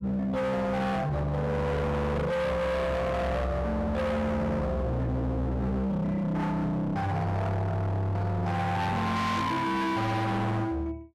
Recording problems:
distorted audio; hard clipping, signal-to-distortion ratio 6 dB

